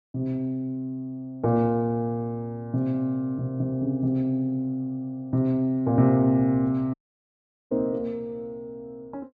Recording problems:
dropout; at 7 s for 1 s

